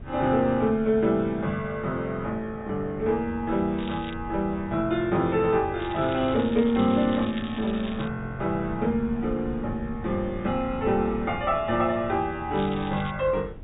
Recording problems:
treble cut off; nothing above 4 kHz
wind on the microphone; below 140 Hz, SNR 16 dB
crackling; at 4 s, from 6 to 8 s and at 13 s; loose cable, SNR 17 dB

